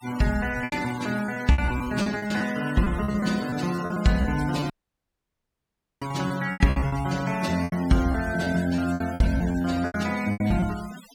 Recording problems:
denoising artefacts; signal-to-artefact ratio 16 dB
packet loss; 16% of the sound replaced, filled with repeated pitch periods
audio cutting out; at 4.5 s for 1.5 s

